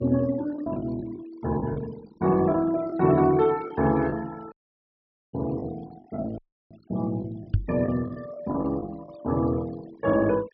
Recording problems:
low-pass filter; nothing above 5.5 kHz
denoising artefacts; signal-to-artefact ratio 21 dB
packet loss; 6% of the sound replaced, filled with the last packet
dropout; at 4.5 s for 1 s and at 6.5 s
microphone thump; at 7.5 s; peak +7 dB vs average level

